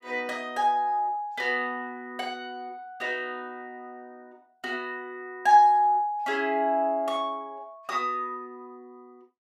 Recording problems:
none

